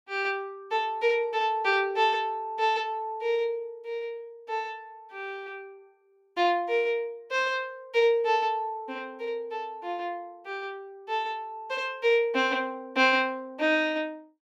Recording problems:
none

